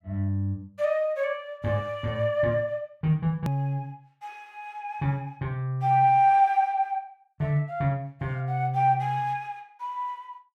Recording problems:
click at an edit; at 3.5 s

